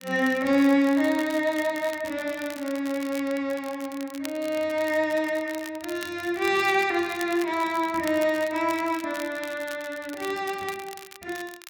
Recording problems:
crackle; vinyl, SNR 17 dB

